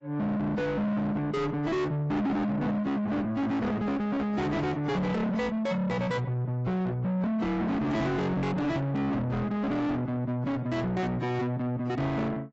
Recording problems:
codec artefacts; AAC, log-spectral distance 2 dB, nothing above 7.6 kHz
distortion; soft clipping, signal-to-distortion ratio 8 dB

